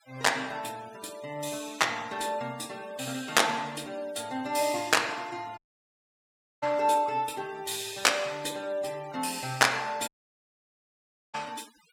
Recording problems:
noise reduction artefacts; signal-to-artefact ratio 21 dB
dropout; at 5.5 s for 1 s and at 10 s for 1.5 s

